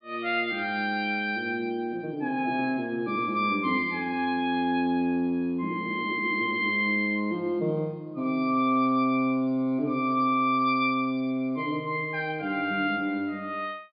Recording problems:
treble cut off; nothing above 4.8 kHz

